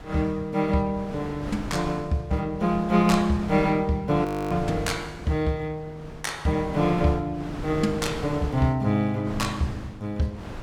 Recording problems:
wind on the microphone; below 620 Hz, SNR 12 dB
audio freezing; at 4.5 s

